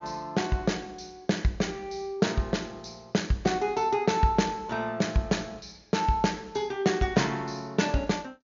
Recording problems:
treble cut off; nothing above 7 kHz

